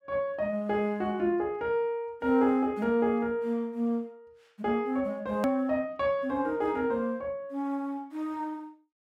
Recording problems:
edit click; at 5.5 s

